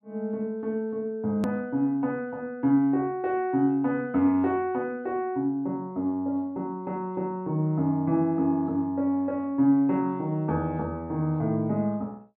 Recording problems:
treble cut off; nothing above 5 kHz
edit click; at 1.5 s

